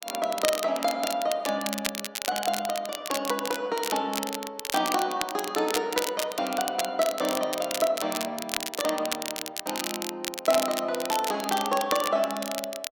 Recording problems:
crackling; vinyl, SNR 5 dB

